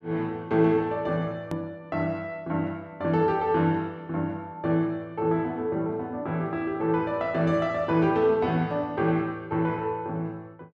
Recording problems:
edit click; at 1.5 s

